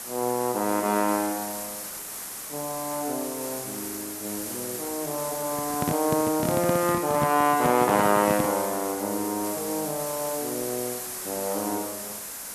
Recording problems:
background hiss; SNR 6 dB
microphone handling noise; from 5.5 to 8.5 s; peak +3 dB vs average level

